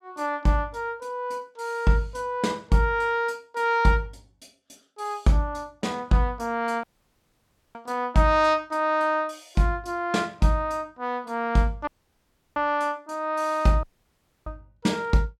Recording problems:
dropout; at 7 s for 1 s, at 12 s for 0.5 s and at 14 s for 0.5 s

